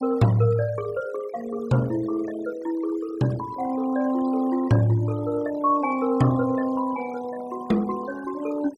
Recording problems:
denoising artefacts; signal-to-artefact ratio 19 dB

